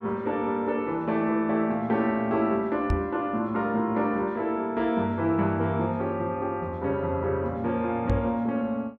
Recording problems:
knock on the microphone; at 3 s and at 8 s; peak +3 dB vs average level

